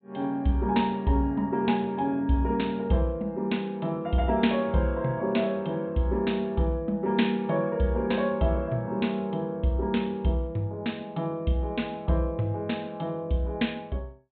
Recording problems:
low-pass filter; nothing above 4 kHz

